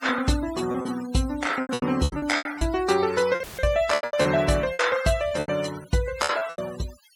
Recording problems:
noise reduction artefacts; signal-to-artefact ratio 15 dB
lost packets; 16% of the sound replaced, filled with repeated pitch periods
audio cutting out; at 3.5 s; filled with static

